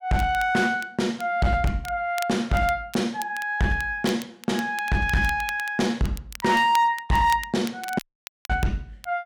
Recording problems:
distortion; hard clipping, uneven, signal-to-distortion ratio 11 dB
crackle; vinyl, SNR 18 dB
audio cutting out; at 8 s for 0.5 s

